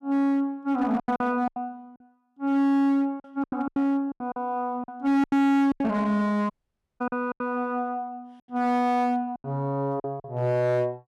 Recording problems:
distortion; hard clipping, signal-to-distortion ratio 6 dB
packet loss; 10% of the sound replaced, filled with silence
dropout; at 6.5 s for 0.5 s

